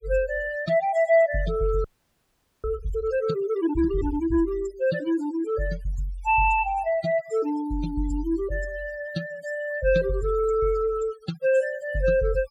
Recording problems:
denoising artefacts; signal-to-artefact ratio 17 dB
frozen audio; at 2 s for 1 s

